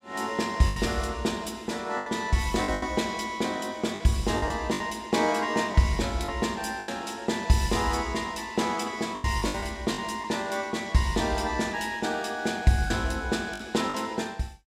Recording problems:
lost packets; 6% of the sound replaced, filled with the last packet

